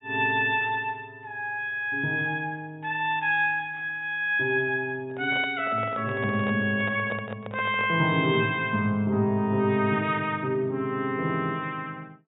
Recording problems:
treble missing; nothing above 4 kHz
microphone handling noise; from 5 to 8 s; peak -6 dB vs average level

